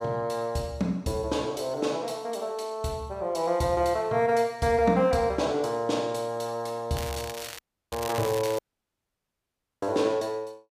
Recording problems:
crackle; from 7 to 8.5 s; loose cable, SNR 11 dB
dropout; at 7.5 s and at 8.5 s for 1 s

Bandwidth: 15 kHz